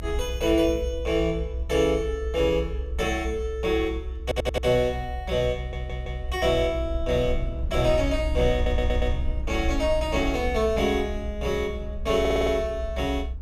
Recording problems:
low-frequency rumble; below 66 Hz, SNR 6 dB
stutter; 4 times, first at 4 s

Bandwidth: 15 kHz